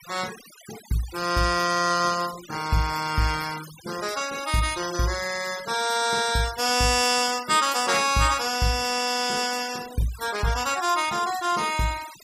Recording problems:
denoising artefacts; signal-to-artefact ratio 14 dB

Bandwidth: 15.5 kHz